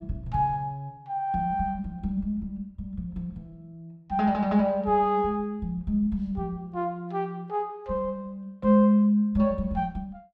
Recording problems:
none

